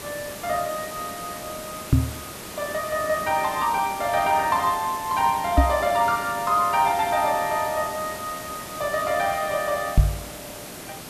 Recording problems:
hiss; slope -3 dB per octave, SNR 12 dB
microphone thump; at 2 s, at 5.5 s and at 10 s; peak +9 dB vs average level

